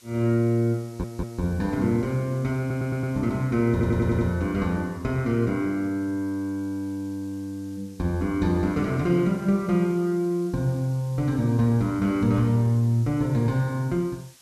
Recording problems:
hiss; slope +1 dB per octave, SNR 27 dB
audio stuttering; at 1 s, at 2.5 s and at 3.5 s

